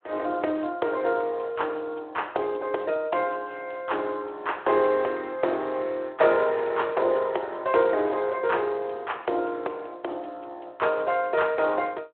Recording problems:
telephone audio; 300 Hz to 3.7 kHz, Speex

